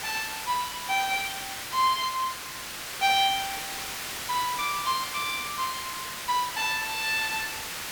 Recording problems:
hiss; slope 0 dB per octave, SNR 6 dB

